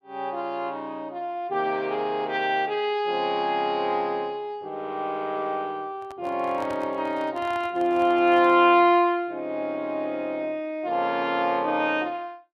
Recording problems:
handling noise; from 6 to 8.5 s; peak -10 dB vs average level

